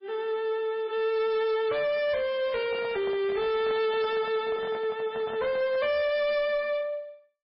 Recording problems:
lossy compression; MP3, log-spectral distance 2 dB, nothing above 5.3 kHz
distorted audio; soft clipping, signal-to-distortion ratio 11 dB
handling noise; from 2.5 to 6 s; peak -7 dB vs average level

